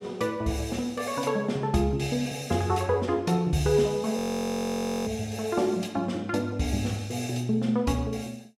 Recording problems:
audio freezing; at 4 s for 1 s

